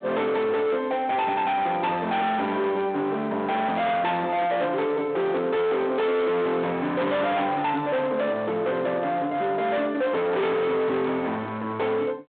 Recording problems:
phone line; 260 Hz to 4 kHz, G.726
distortion; hard clipping, signal-to-distortion ratio 8 dB

